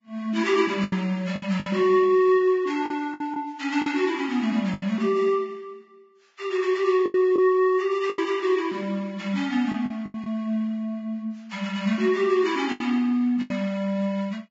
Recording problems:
codec artefacts; Vorbis, log-spectral distance 2 dB, nothing above 7.3 kHz
packet loss; 7% of the sound replaced, filled with the last packet

